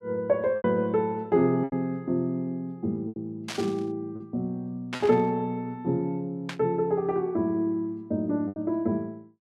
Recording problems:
lost packets; 4% of the sound replaced, filled with repeated pitch periods
static burst; at 3.5 s, at 5 s and at 6.5 s; peak -2 dB vs average level

